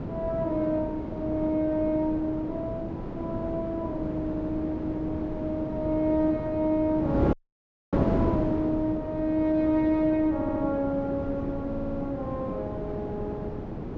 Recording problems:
treble missing; nothing above 8 kHz
wind noise; below 410 Hz, SNR 4 dB
audio stuttering; at 4.5 s, at 10 s and at 12 s
dropout; at 7.5 s for 0.5 s

